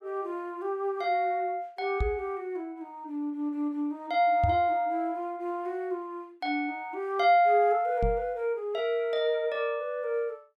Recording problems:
microphone bump; at 2 s, at 4.5 s and at 8 s; peak +4 dB vs average level

